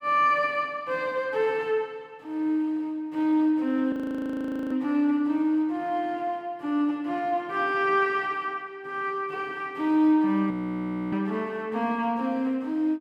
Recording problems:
audio freezing; at 4 s for 1 s and at 11 s for 0.5 s

